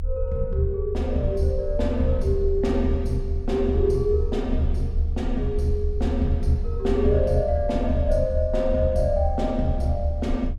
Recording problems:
rumble; below 74 Hz, strongest tone 28 Hz, SNR 6 dB

